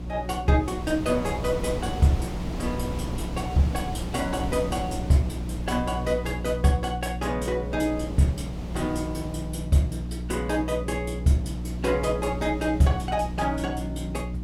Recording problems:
hum; 60 Hz, harmonics up to 360 Hz, SNR 7 dB
wind on the microphone; below 430 Hz, SNR 11 dB

